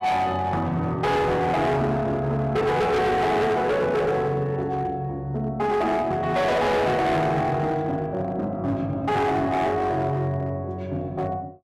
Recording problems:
distortion; hard clipping, signal-to-distortion ratio 7 dB

